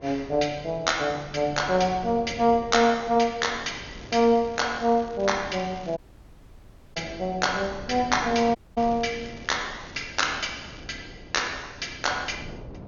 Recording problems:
low-pass filter; nothing above 6.8 kHz
wind noise; below 440 Hz, SNR 18 dB
crackling; from 4 to 7 s and from 9 to 11 s; loose cable, SNR 25 dB
dropout; at 6 s for 1 s and at 8.5 s

